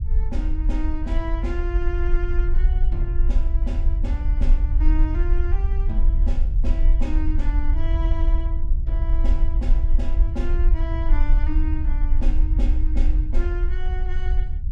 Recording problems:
rumble; below 50 Hz, strongest tone 24 Hz, SNR -10 dB

